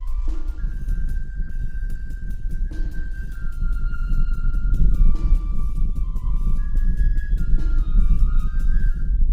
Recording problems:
lossy compression; Opus, log-spectral distance 2 dB
rumble; below 42 Hz, SNR -18 dB

